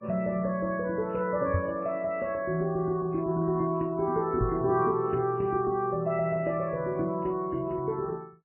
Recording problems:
lossy codec; MP3, log-spectral distance 2 dB, nothing above 2.7 kHz
microphone bump; at 1.5 s and at 4.5 s; peak +4 dB vs average level

